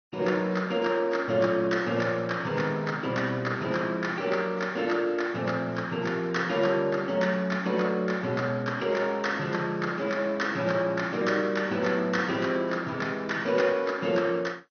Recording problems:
lossy codec; AAC, then MP2, log-spectral distance 2 dB, nothing above 6.3 kHz

